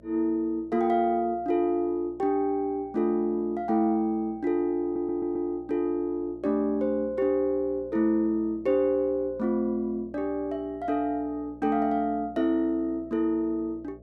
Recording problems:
electrical hum; 60 Hz, harmonics up to 660 Hz, SNR 25 dB
stutter; at 5 s

